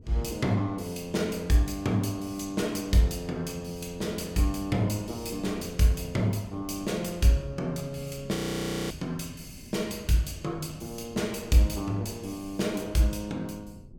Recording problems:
wind noise; below 230 Hz, SNR 18 dB
audio freezing; at 8.5 s for 0.5 s

